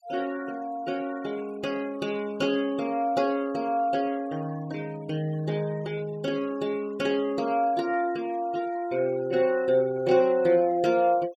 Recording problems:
denoising artefacts; signal-to-artefact ratio 24 dB

